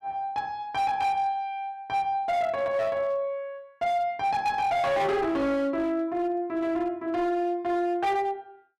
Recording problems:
distortion; hard clipping, signal-to-distortion ratio 11 dB

